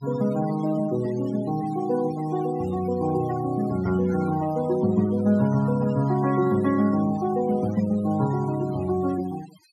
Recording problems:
noise reduction artefacts; signal-to-artefact ratio 18 dB

